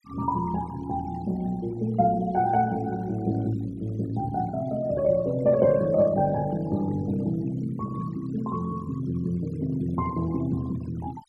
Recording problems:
noise reduction artefacts; signal-to-artefact ratio 21 dB

